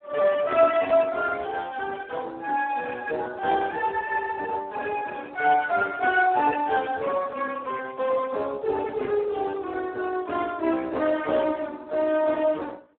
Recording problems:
telephone audio; 300 Hz to 2.6 kHz, Speex

